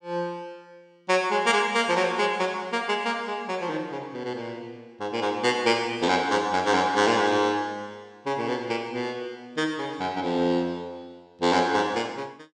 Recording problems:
none

